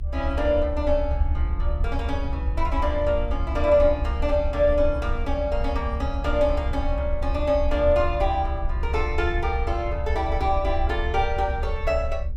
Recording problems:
rumble; below 68 Hz, SNR 3 dB

